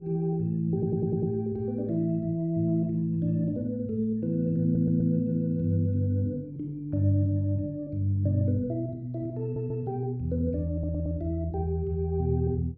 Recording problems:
electrical hum; 50 Hz, harmonics up to 500 Hz, SNR 28 dB
audio stuttering; 4 times, first at 0.5 s

